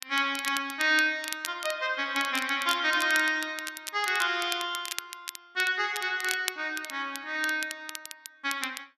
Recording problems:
crackle; vinyl, SNR 10 dB

